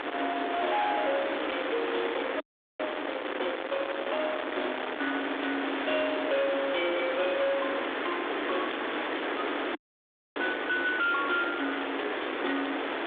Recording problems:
phone line; 280 Hz to 3.6 kHz, G.726
distorted audio; soft clipping, signal-to-distortion ratio 7 dB
hiss; SNR 2 dB
wind noise; below 1.9 kHz, SNR 10 dB
audio freezing; at 2.5 s and at 10 s for 0.5 s

